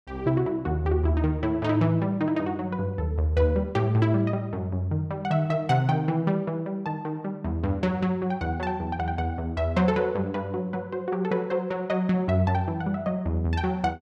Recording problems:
none

